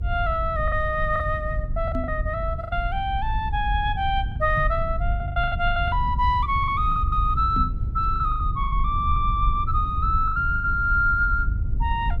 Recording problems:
low-frequency rumble; below 78 Hz, SNR 4 dB
packet loss; 11% of the sound replaced, filled with the last packet
microphone bump; at 2 s, at 4.5 s and at 7.5 s; peak -2 dB vs average level

